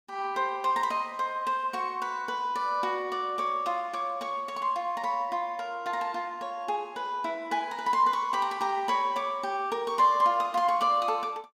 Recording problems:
none

